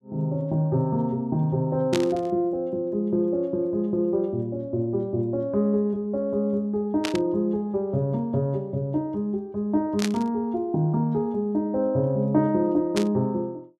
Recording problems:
static burst; 4 times, first at 2 s; peak 0 dB vs average level

